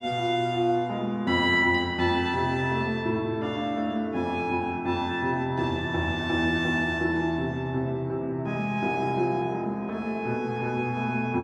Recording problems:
none

